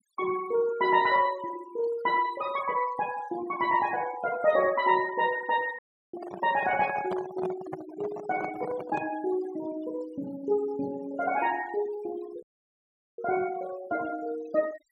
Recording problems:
denoising artefacts; signal-to-artefact ratio 17 dB
audio cutting out; at 6 s and at 12 s for 1 s
handling noise; from 6 to 9 s; peak -2 dB vs average level

